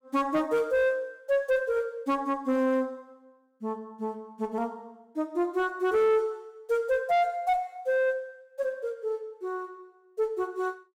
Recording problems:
distortion; soft clipping, signal-to-distortion ratio 11 dB

